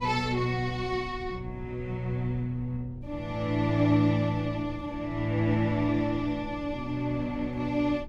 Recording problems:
wind noise; below 120 Hz, SNR 16 dB

